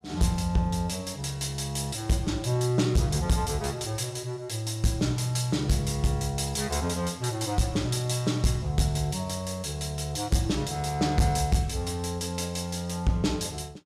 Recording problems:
distorted audio; hard clipping, signal-to-distortion ratio 12 dB

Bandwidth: 14.5 kHz